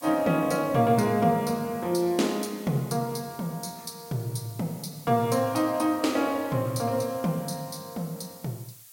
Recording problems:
hiss; slope +2 dB per octave, SNR 19 dB

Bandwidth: 16.5 kHz